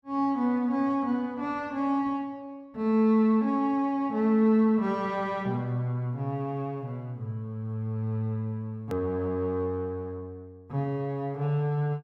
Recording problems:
hard cut with a click; at 9 s

